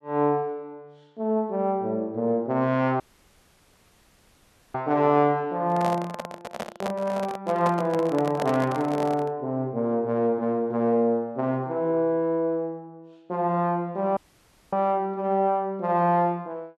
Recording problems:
dropout; at 3 s for 1.5 s and at 14 s for 0.5 s
handling noise; from 5.5 to 9.5 s; peak -1 dB vs average level

